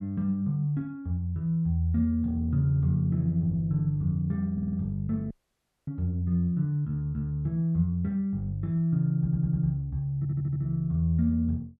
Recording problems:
stutter; at 4.5 s, at 9 s and at 10 s
dropout; at 5.5 s for 0.5 s

